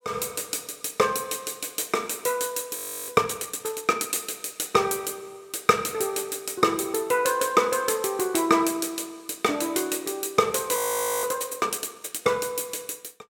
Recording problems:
audio freezing; at 3 s and at 11 s

